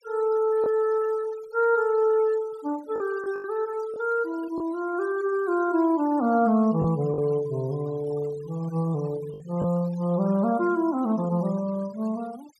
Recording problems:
denoising artefacts; signal-to-artefact ratio 22 dB
lost packets; 3% of the sound replaced, filled with the last packet

